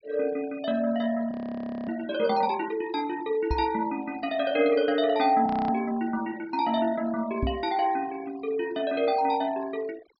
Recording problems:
treble cut off; nothing above 5.5 kHz
denoising artefacts; signal-to-artefact ratio 20 dB
frozen audio; at 1.5 s for 0.5 s and at 5.5 s
microphone thump; at 3.5 s and at 7.5 s; peak +2 dB vs average level

